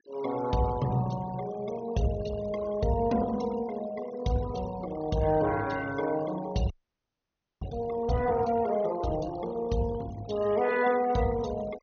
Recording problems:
treble missing; nothing above 6.4 kHz
denoising artefacts; signal-to-artefact ratio 17 dB
frozen audio; at 6.5 s for 1 s

